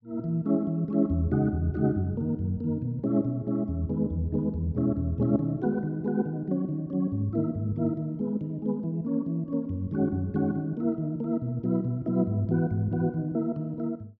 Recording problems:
none

